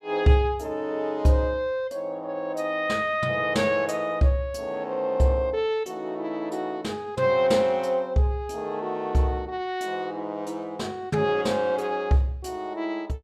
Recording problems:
none

